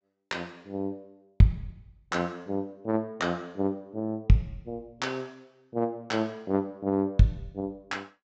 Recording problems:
treble missing; nothing above 8 kHz

